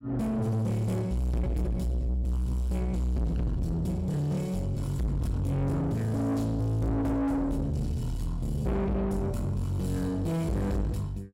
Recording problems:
distorted audio; soft clipping, signal-to-distortion ratio 6 dB

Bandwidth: 16 kHz